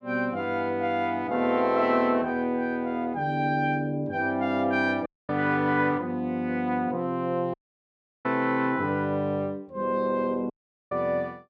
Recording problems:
audio cutting out; at 5 s, at 7.5 s for 0.5 s and at 11 s

